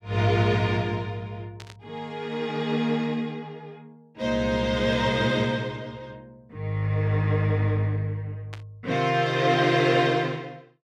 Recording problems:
burst of static; at 1.5 s, at 5 s and at 8.5 s; peak -12 dB vs average level

